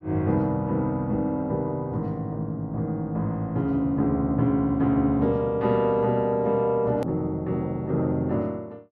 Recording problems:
click at an edit; at 7 s

